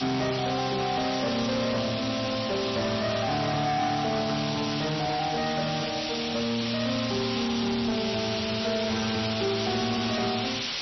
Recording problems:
codec artefacts; MP3, log-spectral distance 16 dB, nothing above 5.8 kHz
distortion; soft clipping, signal-to-distortion ratio 10 dB
hiss; SNR 3 dB

